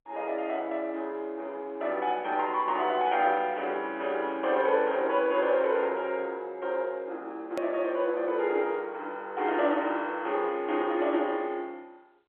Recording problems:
phone line; 280 Hz to 3.4 kHz, G.711
hard cut with a click; at 7.5 s

